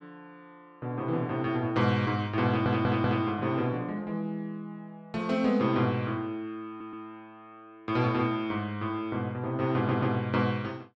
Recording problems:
stutter; at 2.5 s, at 6.5 s and at 10 s

